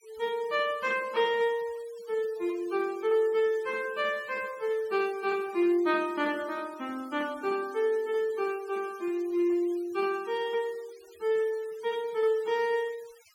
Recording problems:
denoising artefacts; signal-to-artefact ratio 23 dB

